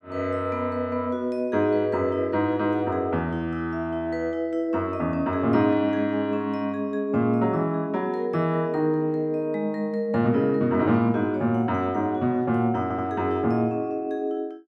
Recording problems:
audio stuttering; at 13 s

